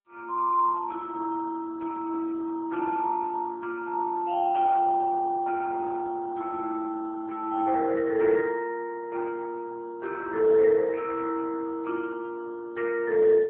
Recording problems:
phone line; 300 Hz to 2.3 kHz, AMR-NB

